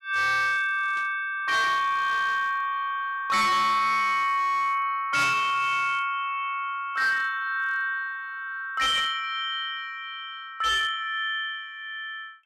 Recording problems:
distortion; hard clipping, uneven, signal-to-distortion ratio 11 dB
static burst; at 1 s and at 9 s; peak -15 dB vs average level

